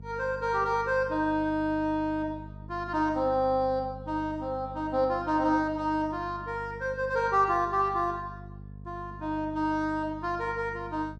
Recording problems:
electrical hum; 50 Hz, harmonics up to 500 Hz, SNR 16 dB

